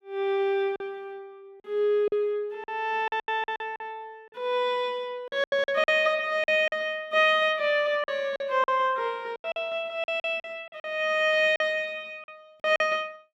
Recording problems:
packet loss; 10% of the sound replaced, filled with silence

